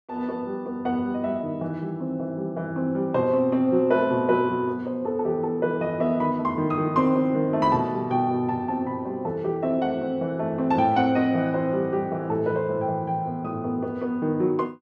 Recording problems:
none

